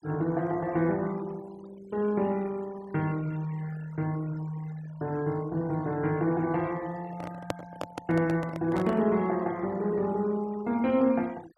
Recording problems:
noise reduction artefacts; signal-to-artefact ratio 21 dB
handling noise; from 7 to 9 s; peak +2 dB vs average level

